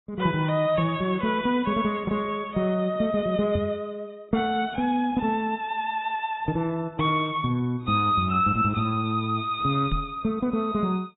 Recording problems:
codec artefacts; AAC, log-spectral distance 2 dB, nothing above 3.8 kHz
knock on the microphone; at 3.5 s and at 10 s; peak +1 dB vs average level

